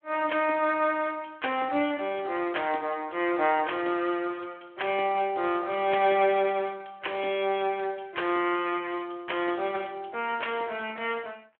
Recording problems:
phone line; 240 Hz to 3.3 kHz, Speex

